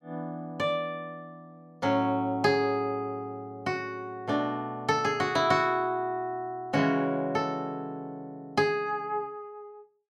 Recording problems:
none

